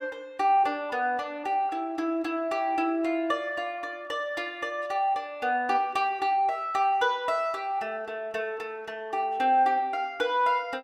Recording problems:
none

